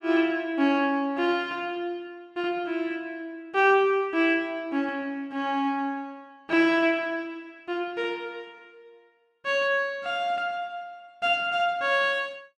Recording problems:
none

